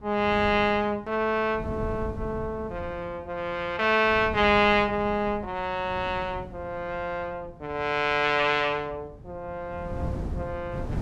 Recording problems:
wind on the microphone; below 210 Hz, SNR 14 dB

